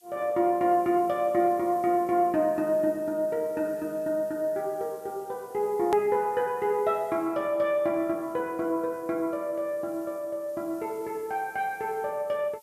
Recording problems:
hiss; SNR 27 dB
hard cut with a click; at 6 s

